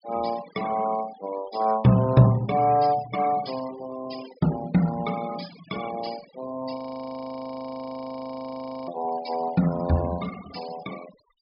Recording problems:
treble missing; nothing above 5.5 kHz
denoising artefacts; signal-to-artefact ratio 17 dB
frozen audio; at 7 s for 2 s

